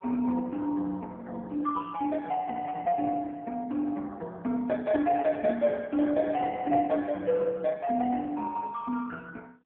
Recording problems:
phone line; 190 Hz to 2.6 kHz, AMR-NB

